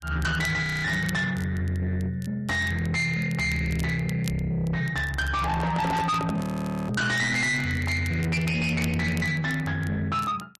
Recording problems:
lossy compression; MP3, log-spectral distance 2 dB
distortion; soft clipping, signal-to-distortion ratio 8 dB
crackle; vinyl, SNR 20 dB
frozen audio; at 0.5 s and at 6.5 s
handling noise; from 5.5 to 7 s; peak -2 dB vs average level

